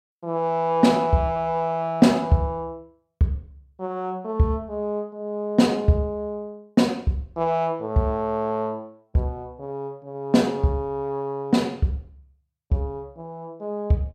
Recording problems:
none

